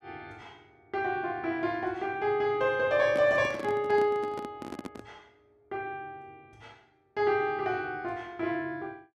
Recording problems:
microphone handling noise; from 3 to 5 s; peak -5 dB vs average level

